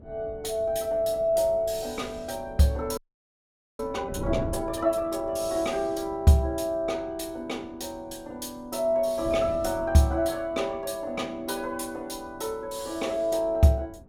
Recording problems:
wind on the microphone; below 290 Hz, SNR 16 dB
audio freezing; at 3 s for 1 s

